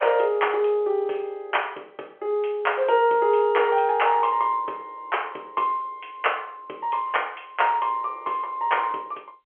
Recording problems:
phone line; 300 Hz to 3.3 kHz, G.711

